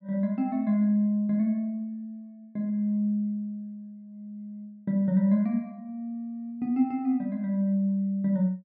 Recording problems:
none

